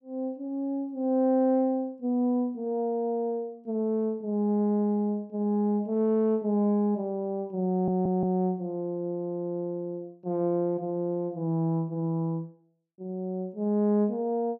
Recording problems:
audio stuttering; at 7.5 s

